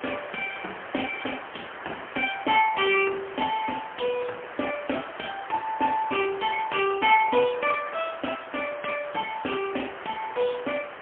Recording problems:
telephone audio; 300 Hz to 3.3 kHz, AMR-NB, then MP3
hiss; SNR 12 dB

